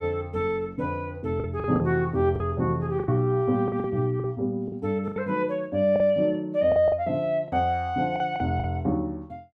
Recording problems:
lost packets; 8% of the sound replaced, filled with the last packet

